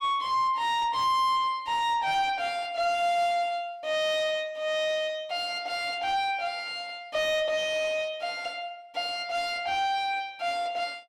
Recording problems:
distorted audio; soft clipping, signal-to-distortion ratio 10 dB

